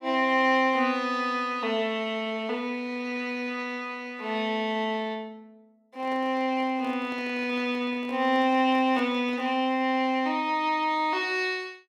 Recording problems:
microphone handling noise; from 6 to 9.5 s; peak -10 dB vs average level

